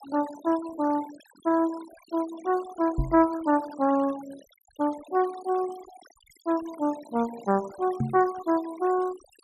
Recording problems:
noise reduction artefacts; signal-to-artefact ratio 20 dB
knock on the microphone; at 3 s and at 8 s; peak +4 dB vs average level

